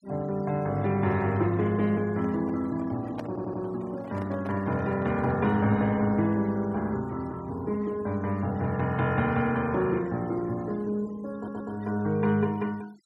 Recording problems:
noise reduction artefacts; signal-to-artefact ratio 25 dB
handling noise; from 2 to 5.5 s; peak -6 dB vs average level
audio stuttering; at 3.5 s and at 11 s

